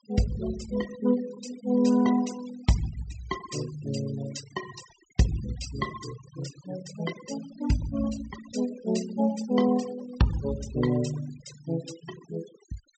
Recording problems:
treble cut off; nothing above 8 kHz
noise reduction artefacts; signal-to-artefact ratio 14 dB

